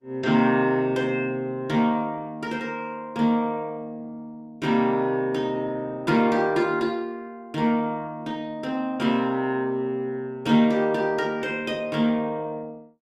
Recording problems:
lossy compression; Opus, log-spectral distance 2 dB, nothing above 15.5 kHz

